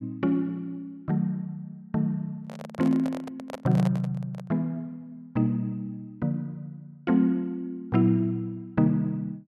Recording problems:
handling noise; from 2.5 to 4.5 s; peak -4 dB vs average level

